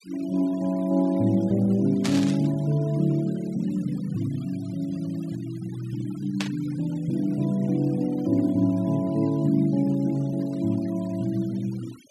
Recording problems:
denoising artefacts; signal-to-artefact ratio 24 dB
burst of static; at 2 s and at 6.5 s; peak -1 dB vs average level

